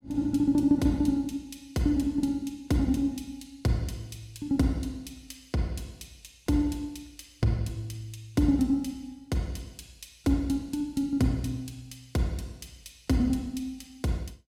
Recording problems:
none

